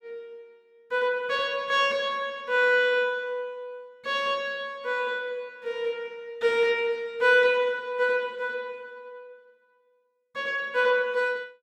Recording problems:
none

